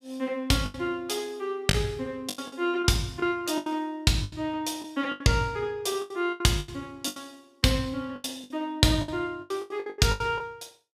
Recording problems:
lost packets; 14% of the sound replaced, filled with the last packet

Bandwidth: 14.5 kHz